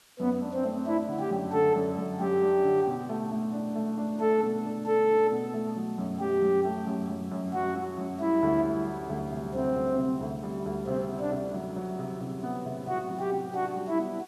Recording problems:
hiss; slope 0 dB per octave, SNR 28 dB

